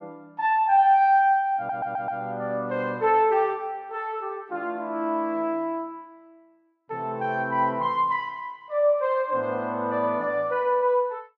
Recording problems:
audio stuttering; at 1.5 s

